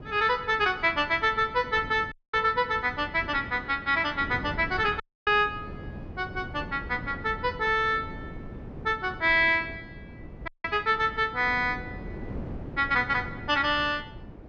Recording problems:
wind noise; below 330 Hz, SNR 15 dB
audio cutting out; at 2 s, at 5 s and at 10 s

